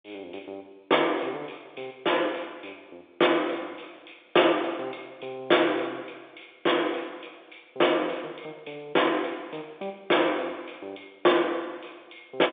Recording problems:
phone line; 300 Hz to 3.6 kHz, G.711

